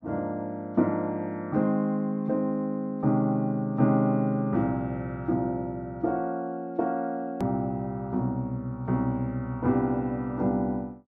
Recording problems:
click at an edit; at 7.5 s

